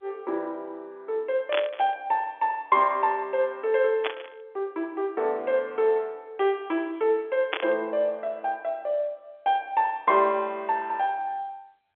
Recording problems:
phone line; 280 Hz to 3.6 kHz, G.711
burst of static; at 1.5 s, at 4 s and at 7.5 s; peak +3 dB vs average level

